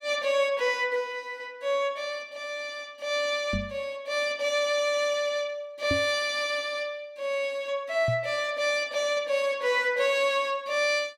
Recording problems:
microphone bump; at 3.5 s, at 6 s and at 8 s; peak 0 dB vs average level

